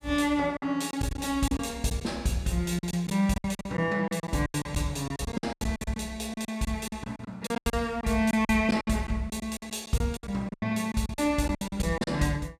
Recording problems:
lost packets; 16% of the sound replaced, filled with silence

